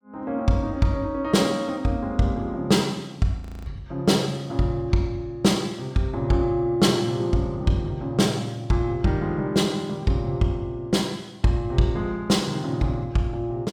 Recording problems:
audio freezing; at 3.5 s

